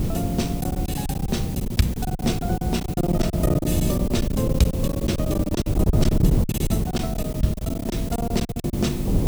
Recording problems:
hum; 50 Hz, harmonics up to 400 Hz, SNR 17 dB
background hiss; SNR 13 dB
wind noise; below 200 Hz, SNR 0 dB
lost packets; 18% of the sound replaced, filled with silence

